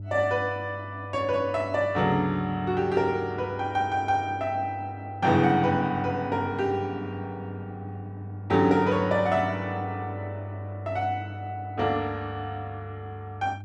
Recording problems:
hum; 50 Hz, harmonics up to 400 Hz, SNR 12 dB

